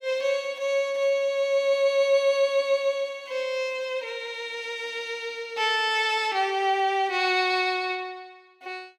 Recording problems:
none

